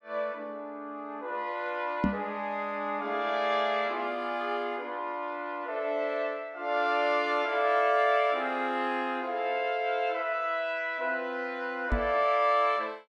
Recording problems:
microphone thump; at 2 s and at 12 s; peak +5 dB vs average level

